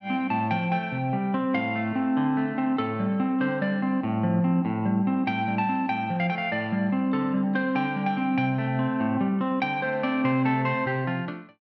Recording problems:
none

